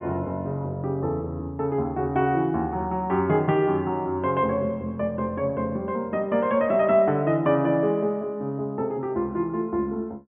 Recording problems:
low-pass filter; nothing above 3.5 kHz

